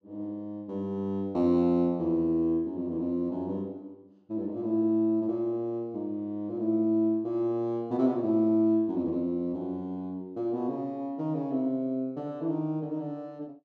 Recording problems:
none

